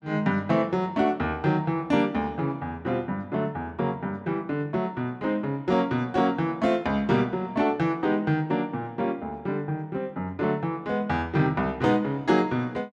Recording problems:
none

